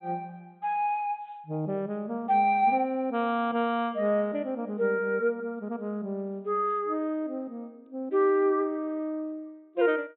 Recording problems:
treble missing; nothing above 4 kHz

